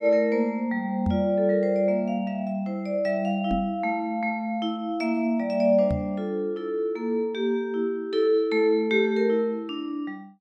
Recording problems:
knock on the microphone; at 1 s, at 3.5 s and at 6 s; peak 0 dB vs average level

